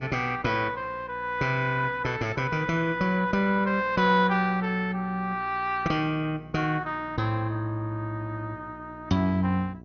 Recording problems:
codec artefacts; MP2, log-spectral distance 2 dB, nothing above 6.3 kHz
hum; 60 Hz, harmonics up to 1 kHz, SNR 22 dB

